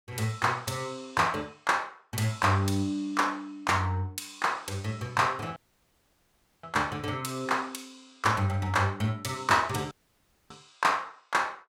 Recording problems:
audio cutting out; at 5.5 s for 1 s and at 10 s for 0.5 s

